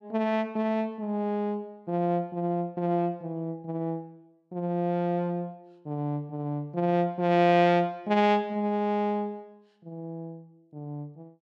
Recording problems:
none

